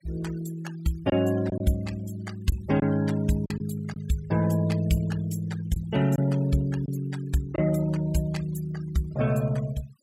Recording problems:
denoising artefacts; signal-to-artefact ratio 18 dB
packet loss; 3% of the sound replaced, filled with silence

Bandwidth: 16 kHz